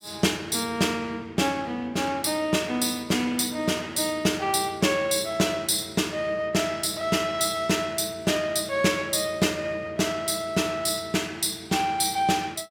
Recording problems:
none

